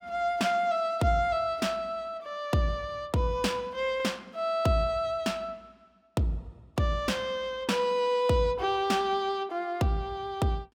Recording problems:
none

